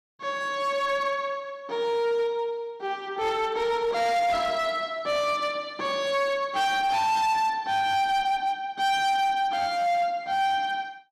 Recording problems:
distortion; hard clipping, signal-to-distortion ratio 11 dB

